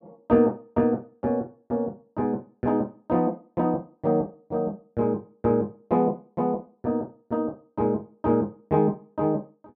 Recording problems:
none

